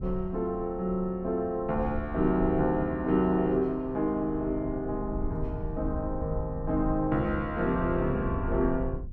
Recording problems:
rumble; below 90 Hz, SNR 10 dB

